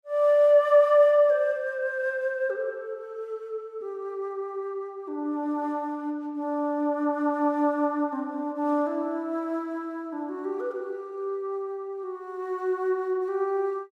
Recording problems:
none

